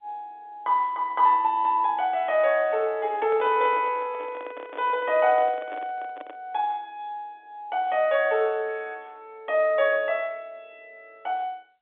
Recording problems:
phone line; 280 Hz to 3.8 kHz, G.711
microphone handling noise; from 3 to 6.5 s; peak -10 dB vs average level

